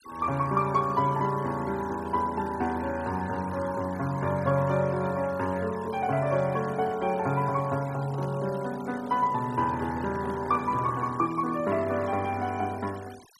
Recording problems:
noise reduction artefacts; signal-to-artefact ratio 20 dB
handling noise; from 8 to 11 s; peak -10 dB vs average level

